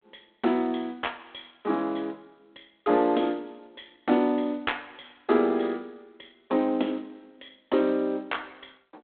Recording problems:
telephone audio; 220 Hz to 3.4 kHz, G.726

